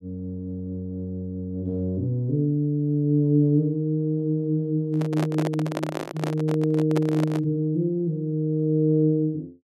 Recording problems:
handling noise; from 5 to 7.5 s; peak -1 dB vs average level

